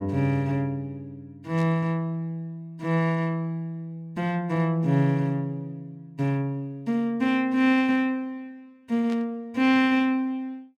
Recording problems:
burst of static; at 1.5 s and at 9 s; peak -14 dB vs average level

